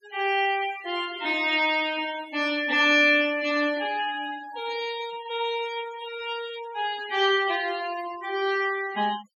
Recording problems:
noise reduction artefacts; signal-to-artefact ratio 16 dB

